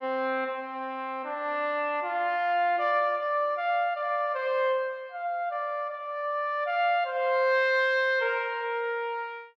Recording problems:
none

